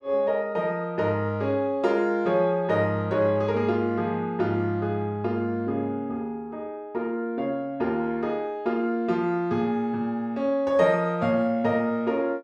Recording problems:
none

